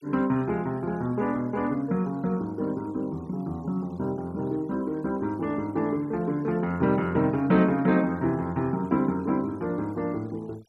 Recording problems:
noise reduction artefacts; signal-to-artefact ratio 27 dB

